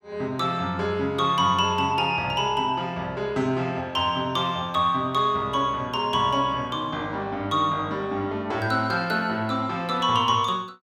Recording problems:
none

